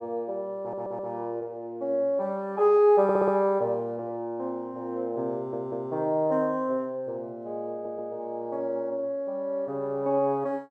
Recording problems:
audio stuttering; 4 times, first at 0.5 s

